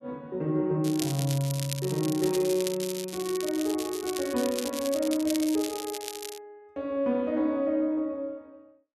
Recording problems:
crackle; from 1 to 6.5 s; loose cable, SNR 9 dB

